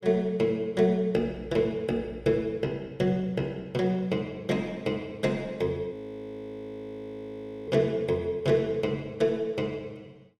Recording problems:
frozen audio; at 6 s for 1.5 s

